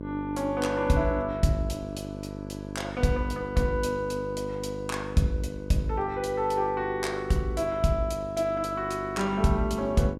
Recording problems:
hum; 50 Hz, harmonics up to 1.1 kHz, SNR 10 dB

